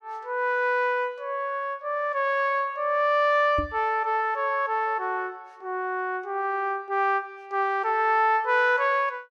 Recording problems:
microphone thump; at 3.5 s; peak -3 dB vs average level

